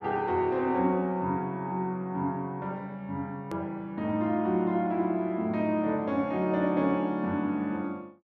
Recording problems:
click at an edit; at 3.5 s

